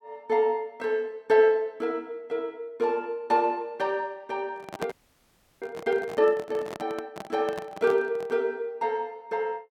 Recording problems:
microphone handling noise; from 4.5 to 8.5 s; peak -1 dB vs average level
audio freezing; at 5 s for 0.5 s

